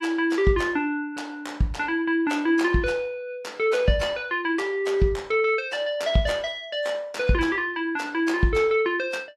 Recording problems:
codec artefacts; AAC, log-spectral distance 2 dB

